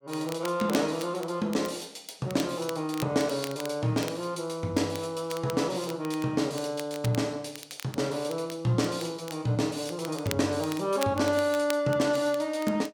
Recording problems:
crackling; vinyl, SNR 15 dB

